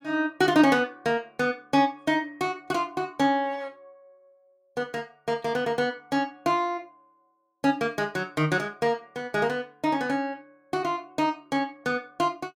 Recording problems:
none

